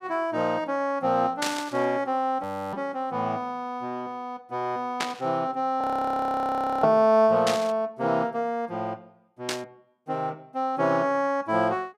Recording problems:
burst of static; 4 times, first at 1.5 s; peak +2 dB vs average level
audio freezing; at 2.5 s and at 6 s for 1 s

